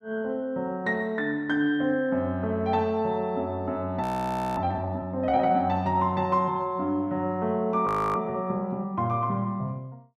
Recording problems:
frozen audio; at 4 s for 0.5 s and at 8 s

